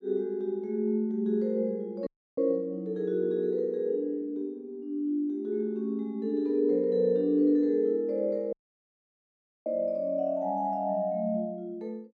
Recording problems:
audio cutting out; at 2 s and at 8.5 s for 1 s

